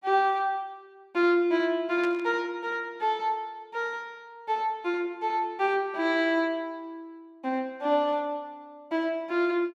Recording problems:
static burst; at 2 s; peak -9 dB vs average level

